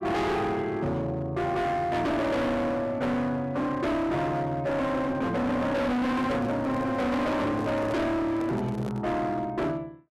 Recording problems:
distortion; hard clipping, signal-to-distortion ratio 6 dB
handling noise; from 6 to 9 s; peak -5 dB vs average level

